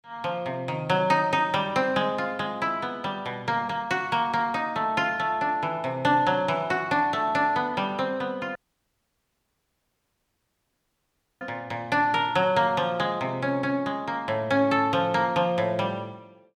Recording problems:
dropout; at 8.5 s for 3 s

